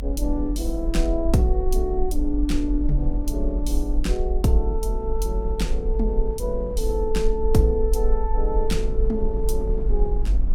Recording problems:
low-frequency rumble; below 48 Hz, SNR 1 dB
wind noise; below 260 Hz, SNR 12 dB

